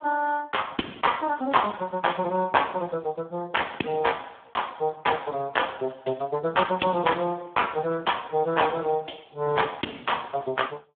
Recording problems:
telephone audio; 150 Hz to 3.4 kHz, Speex

